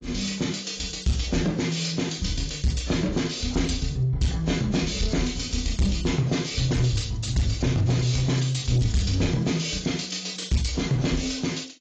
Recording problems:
lossy codec; AAC, log-spectral distance 7 dB, nothing above 7.3 kHz
distorted audio; soft clipping, signal-to-distortion ratio 10 dB

